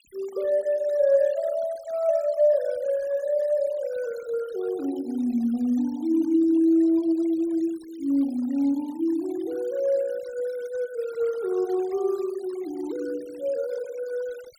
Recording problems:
noise reduction artefacts; signal-to-artefact ratio 25 dB

